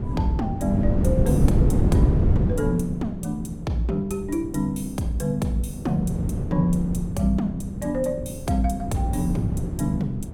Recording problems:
wind noise; below 200 Hz, SNR 1 dB

